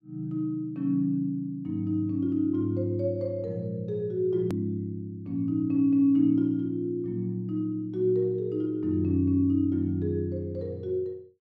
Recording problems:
edit click; at 4.5 s

